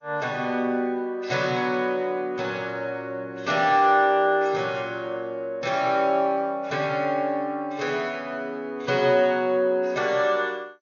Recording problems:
lossy compression; MP2, then MP3, log-spectral distance 2 dB, nothing above 6.7 kHz

